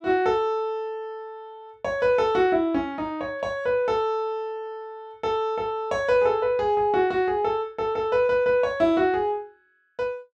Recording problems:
none

